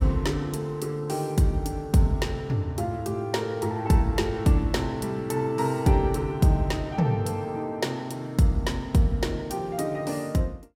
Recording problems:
none

